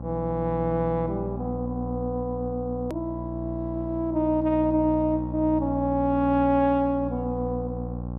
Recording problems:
electrical hum; 60 Hz, harmonics up to 1.1 kHz, SNR 8 dB
edit click; at 3 s

